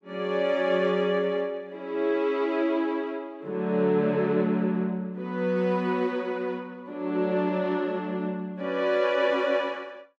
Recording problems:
none

